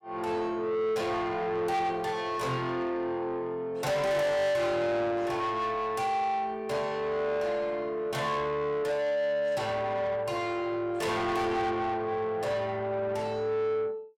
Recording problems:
distortion; soft clipping, signal-to-distortion ratio 8 dB

